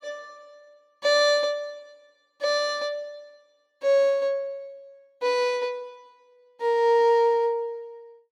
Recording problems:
none

